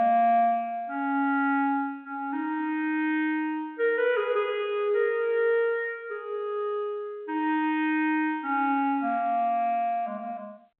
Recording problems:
phone line; 240 Hz to 3.4 kHz, G.711

